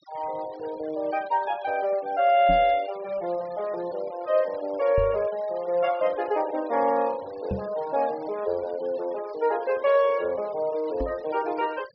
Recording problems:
treble cut off; nothing above 5.5 kHz
denoising artefacts; signal-to-artefact ratio 23 dB
microphone thump; 4 times, first at 2.5 s; peak -1 dB vs average level

